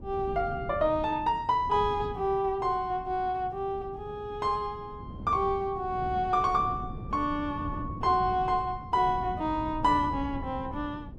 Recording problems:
wind on the microphone; below 210 Hz, SNR 12 dB

